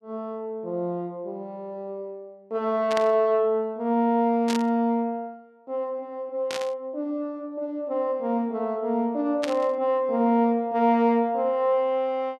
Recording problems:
burst of static; 4 times, first at 3 s; peak -2 dB vs average level

